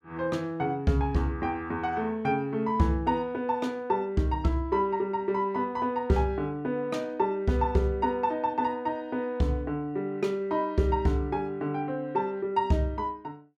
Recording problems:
none

